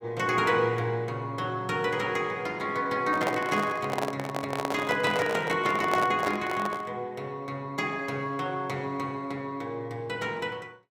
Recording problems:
microphone handling noise; from 3 to 7 s; peak +5 dB vs average level

